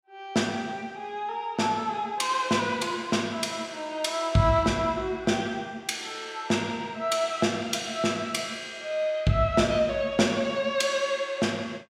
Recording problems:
none

